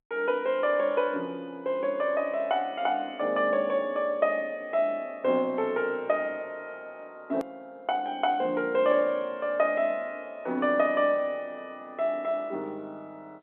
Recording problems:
telephone audio; 190 Hz to 3.5 kHz, G.711
edit click; at 7.5 s

